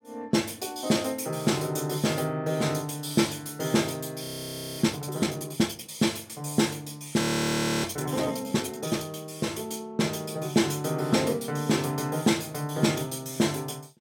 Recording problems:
audio freezing; at 4 s for 0.5 s and at 7 s for 0.5 s

